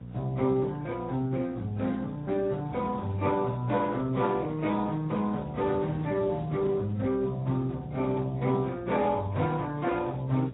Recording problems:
codec artefacts; Speex, then AAC, log-spectral distance 3 dB, nothing above 3.8 kHz
hum; 60 Hz, harmonics up to 540 Hz, SNR 14 dB
wind on the microphone; below 360 Hz, SNR 20 dB

